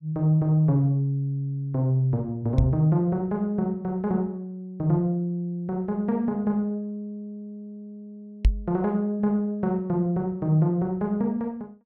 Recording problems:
knock on the microphone; at 2.5 s and at 8.5 s; peak +8 dB vs average level

